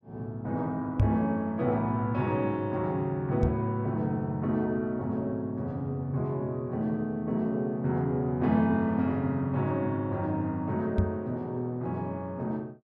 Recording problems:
microphone bump; at 1 s, at 3.5 s and at 11 s; peak +8 dB vs average level

